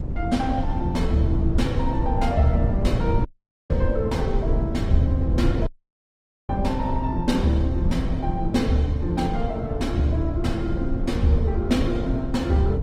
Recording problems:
lossy compression; Opus, log-spectral distance 2 dB, nothing above 19 kHz
rumble; below 110 Hz, SNR 3 dB
dropout; at 3.5 s and at 5.5 s for 1 s

